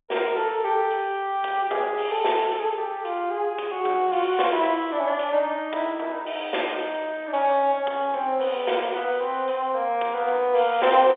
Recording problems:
phone line; 340 Hz to 3.6 kHz, G.711

